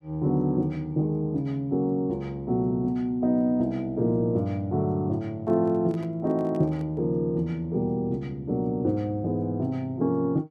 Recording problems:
microphone handling noise; from 5.5 to 7 s; peak -11 dB vs average level

